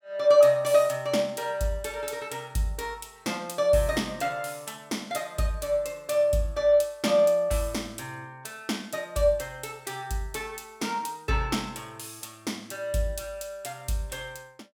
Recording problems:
none

